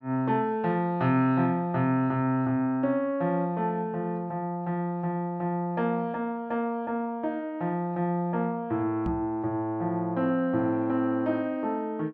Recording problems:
microphone bump; at 9 s; peak 0 dB vs average level

